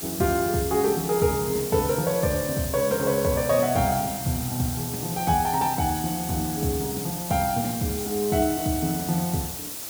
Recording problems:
background hiss; SNR 6 dB

